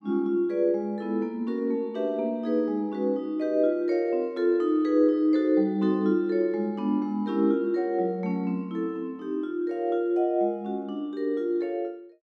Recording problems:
none

